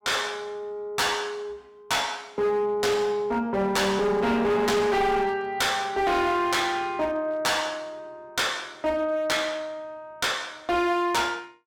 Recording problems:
distorted audio; hard clipping, uneven, signal-to-distortion ratio 7 dB

